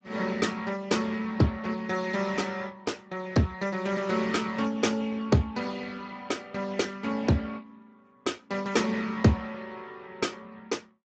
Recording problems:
codec artefacts; Speex, log-spectral distance 5 dB, nothing above 7.6 kHz

